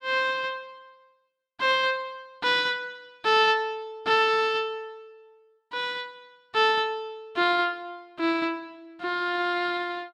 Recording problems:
none

